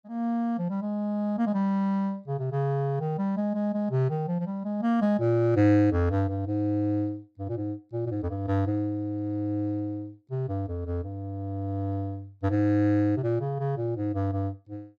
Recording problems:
none

